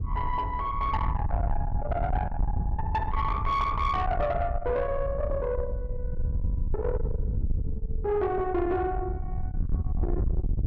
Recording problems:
distortion; soft clipping, signal-to-distortion ratio 8 dB
wind on the microphone; below 90 Hz, SNR 3 dB

